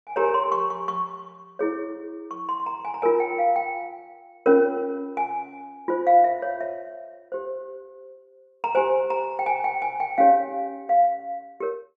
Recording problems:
none

